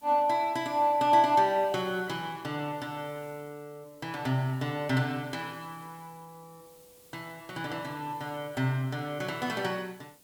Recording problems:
background hiss; SNR 26 dB

